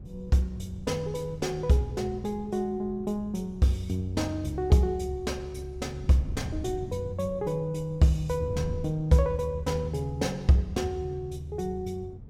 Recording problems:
wind noise; below 150 Hz, SNR 14 dB

